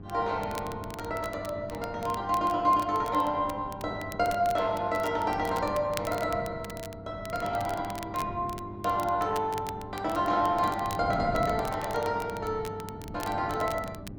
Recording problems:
hum; 50 Hz, harmonics up to 1.1 kHz, SNR 16 dB
wind on the microphone; below 260 Hz, SNR 14 dB
crackle; vinyl, SNR 17 dB

